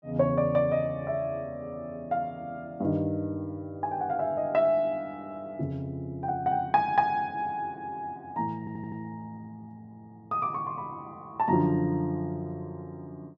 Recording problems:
stutter; at 8.5 s

